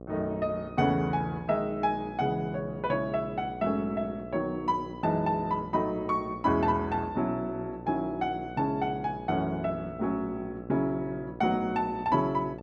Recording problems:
mains hum; 60 Hz, harmonics up to 1.2 kHz, SNR 14 dB

